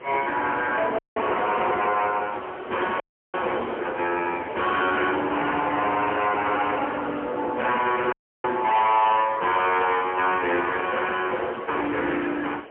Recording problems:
telephone audio; 300 Hz to 3.1 kHz, AMR-NB, then MP3
distorted audio; hard clipping, signal-to-distortion ratio 11 dB
background hiss; SNR 27 dB
wind noise; below 950 Hz, SNR 13 dB
audio cutting out; at 1 s, at 3 s and at 8 s

